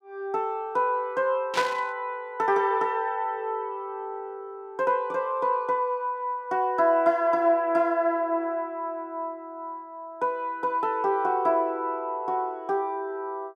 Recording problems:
static burst; at 1.5 s; peak +1 dB vs average level

